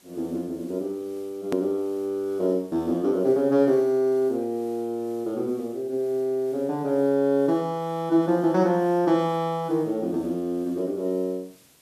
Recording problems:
background hiss; SNR 29 dB
hard cut with a click; at 1.5 s

